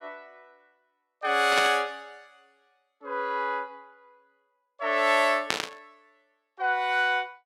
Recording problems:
static burst; at 1.5 s and at 5.5 s; peak +4 dB vs average level

